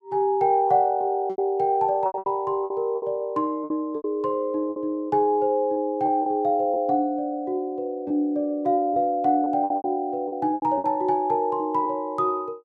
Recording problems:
packet loss; 9% of the sound replaced, filled with repeated pitch periods

